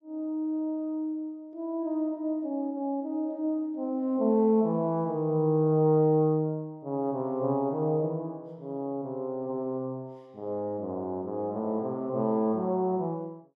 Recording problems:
none

